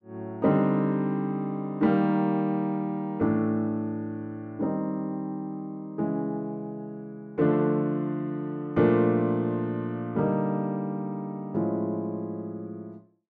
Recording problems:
none

